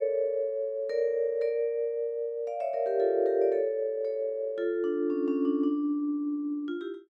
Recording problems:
none

